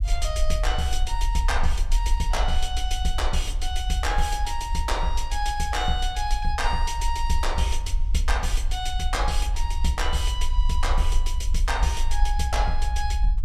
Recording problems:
rumble; below 52 Hz, strongest tone 22 Hz, SNR 0 dB

